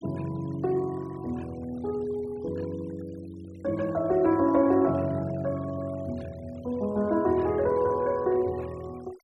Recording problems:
denoising artefacts; signal-to-artefact ratio 24 dB

